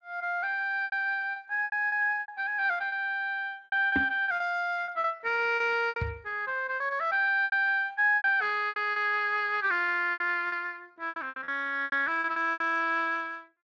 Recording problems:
codec artefacts; Speex, log-spectral distance 2 dB
lost packets; 13% of the sound replaced, filled with repeated pitch periods
microphone bump; at 4 s and at 6 s; peak +2 dB vs average level

